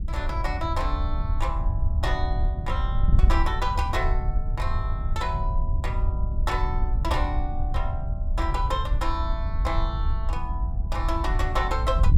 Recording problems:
wind noise; below 72 Hz, SNR -3 dB

